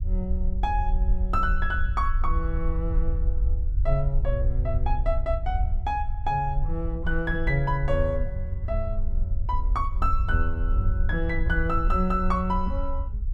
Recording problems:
rumble; below 58 Hz, SNR 0 dB

